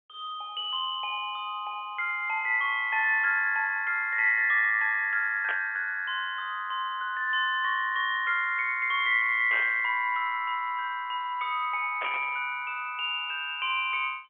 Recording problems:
telephone audio; 150 Hz to 3.3 kHz, G.711
burst of static; at 5.5 s, at 9.5 s and at 12 s; peak -5 dB vs average level

